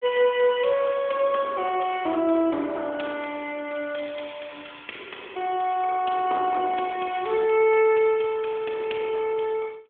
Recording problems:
phone line; 240 Hz to 3.4 kHz, AMR-NB

